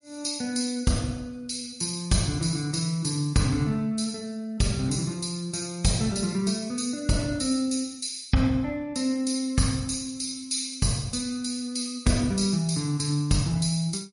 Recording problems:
lossy codec; MP3, log-spectral distance 6 dB, nothing above 10.4 kHz

